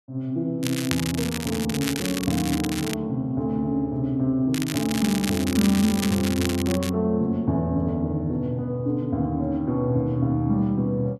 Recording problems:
crackling; from 0.5 to 3 s and from 4.5 to 7 s; loose cable, SNR 7 dB

